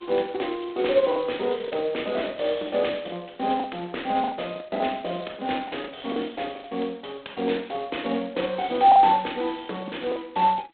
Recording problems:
phone line; 280 Hz to 3.8 kHz, G.726
packet loss; 8% of the sound replaced, filled with the last packet

